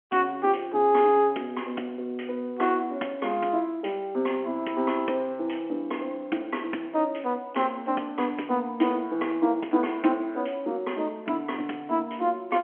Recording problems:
phone line; 220 Hz to 3.2 kHz, G.711

